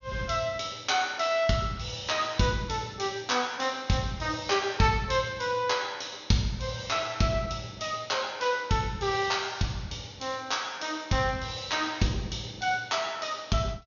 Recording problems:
low-pass filter; nothing above 6.7 kHz

